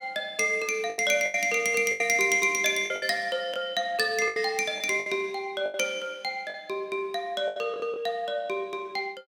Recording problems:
lost packets; 8% of the sound replaced, filled with the last packet

